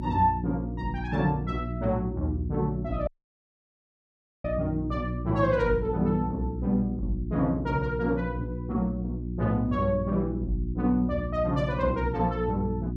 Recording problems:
hum; 60 Hz, harmonics up to 360 Hz, SNR 6 dB
audio cutting out; at 3 s for 1.5 s

